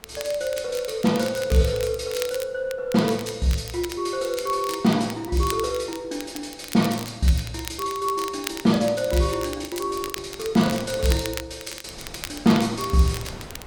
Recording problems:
wind on the microphone; below 1 kHz, SNR 23 dB
crackling; vinyl, SNR 13 dB
packet loss; 2% of the sound replaced, filled with the last packet

